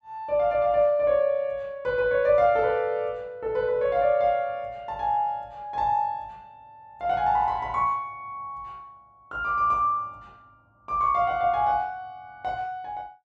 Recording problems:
none

